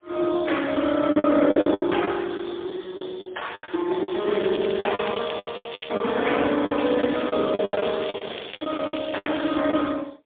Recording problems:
phone line; 220 Hz to 3.5 kHz, AMR-NB, then MP3
packet loss; 16% of the sound replaced, filled with the last packet
crackle; from 4 to 6 s and from 7 to 9.5 s; loose cable, SNR 13 dB

